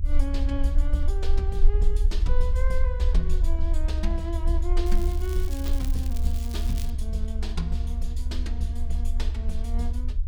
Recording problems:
low-frequency rumble; below 66 Hz, SNR -7 dB
crackle; from 5 to 7 s; loose cable, SNR 9 dB

